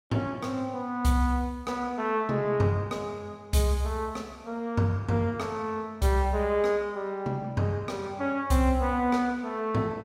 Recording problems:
none

